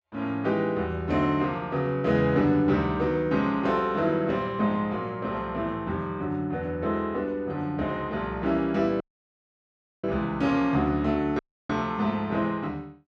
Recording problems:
dropout; at 9 s for 1 s and at 11 s

